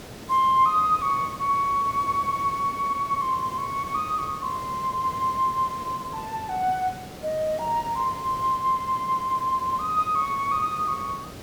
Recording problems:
hiss; slope -5 dB per octave, SNR 15 dB

